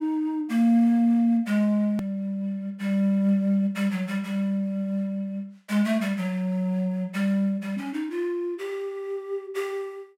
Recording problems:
hard cut with a click; at 2 s

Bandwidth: 16 kHz